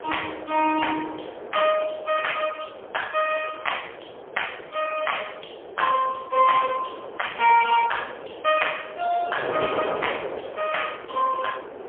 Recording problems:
telephone audio; 320 Hz to 3.3 kHz, AMR-NB, then MP3
wind noise; below 770 Hz, SNR 11 dB

